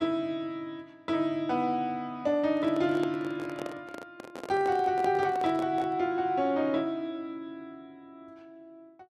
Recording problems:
microphone handling noise; from 2.5 to 6 s; peak -4 dB vs average level

